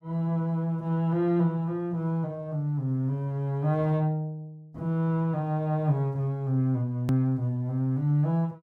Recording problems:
hard cut with a click; at 7 s

